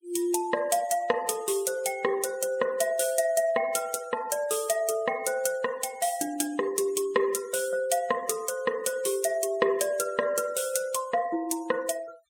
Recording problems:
noise reduction artefacts; signal-to-artefact ratio 20 dB

